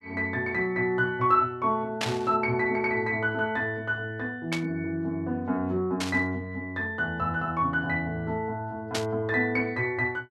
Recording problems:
static burst; 4 times, first at 2 s; peak +2 dB vs average level

